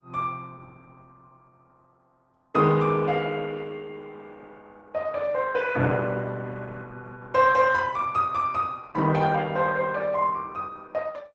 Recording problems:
lossy compression; Opus, log-spectral distance 3 dB, nothing above 8 kHz

